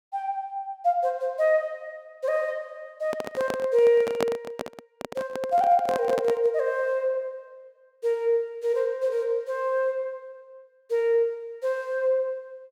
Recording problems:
handling noise; from 3 to 6.5 s; peak +2 dB vs average level

